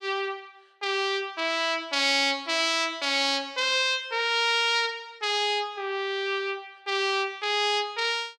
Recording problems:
none

